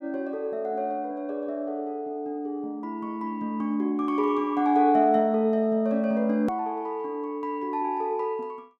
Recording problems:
hard cut with a click; at 6.5 s

